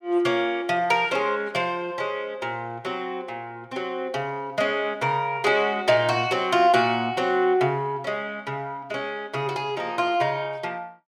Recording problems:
none

